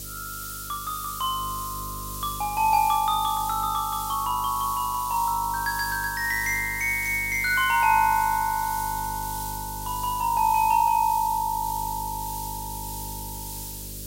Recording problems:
electrical hum; 50 Hz, harmonics up to 600 Hz, SNR 17 dB
hiss; SNR 10 dB

